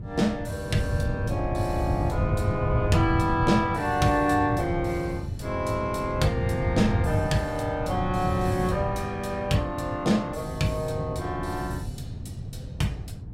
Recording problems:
wind noise; below 150 Hz, SNR 4 dB

